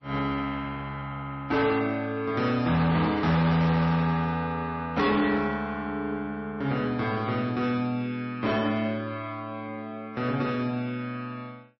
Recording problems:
lossy compression; MP3, log-spectral distance 2 dB, nothing above 5.7 kHz
distorted audio; hard clipping, signal-to-distortion ratio 11 dB

